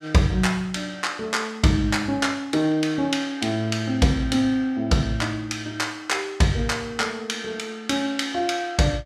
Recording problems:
none

